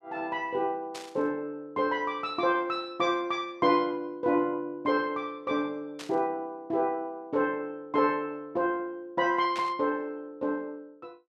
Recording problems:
static burst; at 1 s, at 6 s and at 9.5 s; peak -6 dB vs average level

